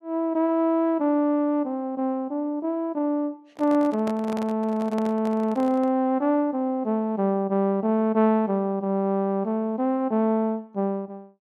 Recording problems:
microphone handling noise; from 3.5 to 6 s; peak -7 dB vs average level

